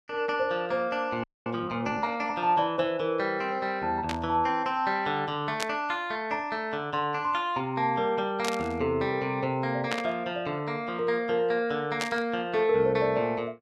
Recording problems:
audio freezing; at 1 s
burst of static; 5 times, first at 4 s; peak +1 dB vs average level

